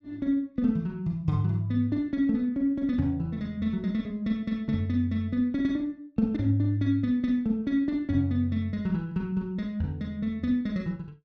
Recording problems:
none

